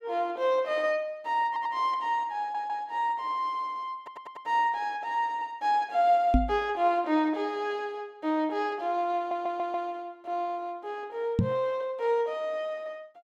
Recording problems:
audio stuttering; 4 times, first at 1.5 s
knock on the microphone; at 6.5 s and at 11 s; peak +8 dB vs average level

